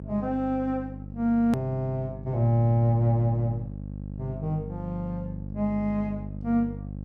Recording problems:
mains hum; 50 Hz, harmonics up to 600 Hz, SNR 11 dB
hard cut with a click; at 1.5 s

